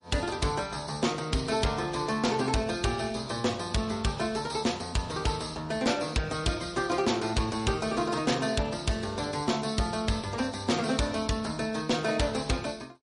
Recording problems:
lossy codec; MP3, log-spectral distance 4 dB, nothing above 10.4 kHz
distorted audio; hard clipping, signal-to-distortion ratio 12 dB

